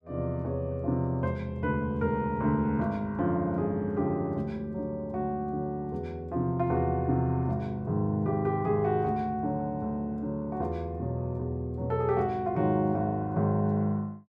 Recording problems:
none

